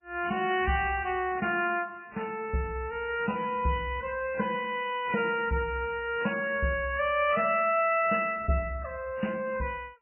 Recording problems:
lossy compression; MP3, log-spectral distance 4 dB, nothing above 2.8 kHz

